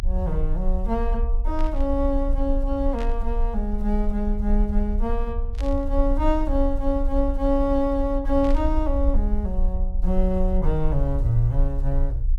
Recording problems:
low-frequency rumble; below 48 Hz, strongest tone 30 Hz, SNR 1 dB
burst of static; 4 times, first at 1.5 s; peak -10 dB vs average level

